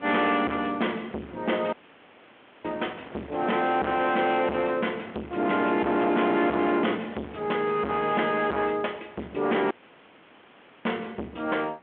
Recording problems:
phone line; 220 Hz to 3.4 kHz, G.726
distorted audio; soft clipping, signal-to-distortion ratio 5 dB
wind on the microphone; below 1.5 kHz, SNR 19 dB
dropout; at 1.5 s for 1 s and at 9.5 s for 1 s

